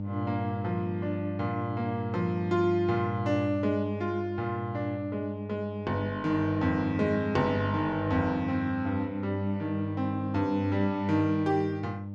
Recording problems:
mains hum; 50 Hz, harmonics up to 600 Hz, SNR 6 dB

